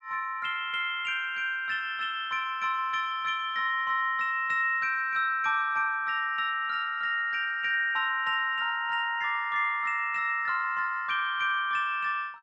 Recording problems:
none

